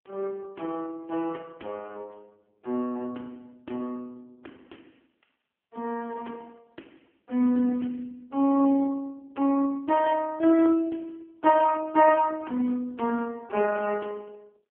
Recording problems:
telephone audio; 220 Hz to 3.1 kHz, AMR-NB

